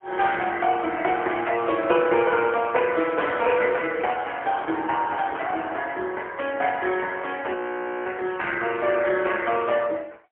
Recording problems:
telephone audio; 260 Hz to 3.4 kHz, AMR-NB, then MP3
audio freezing; at 7.5 s for 0.5 s

